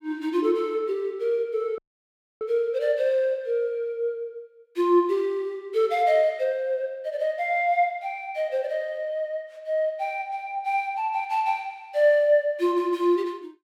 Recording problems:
dropout; at 2 s for 0.5 s

